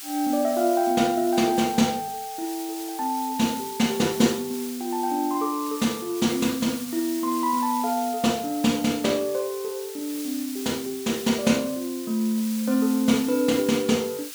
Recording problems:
hiss; slope +3 dB per octave, SNR 12 dB

